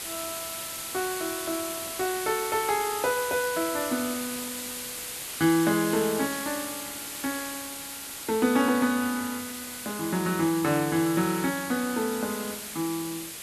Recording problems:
background hiss; slope 0 dB per octave, SNR 6 dB

